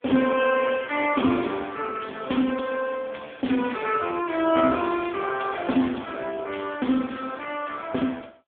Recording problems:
phone line; 190 Hz to 3.4 kHz, AMR-NB

